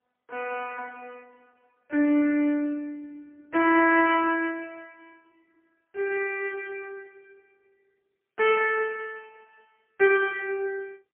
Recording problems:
phone line; 260 Hz to 3 kHz, AMR-NB, then MP3

